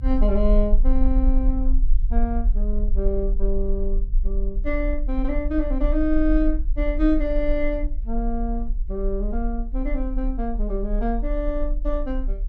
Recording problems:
low-frequency rumble; below 40 Hz, SNR 0 dB

